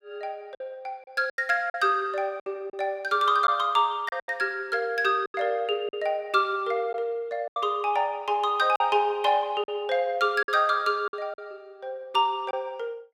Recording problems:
lost packets; 7% of the sound replaced, filled with silence

